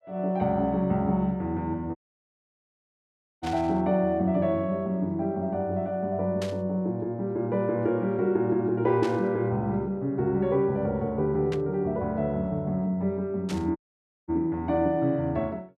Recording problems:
audio cutting out; at 2 s for 1.5 s and at 14 s for 0.5 s
burst of static; 5 times, first at 3.5 s; peak -7 dB vs average level

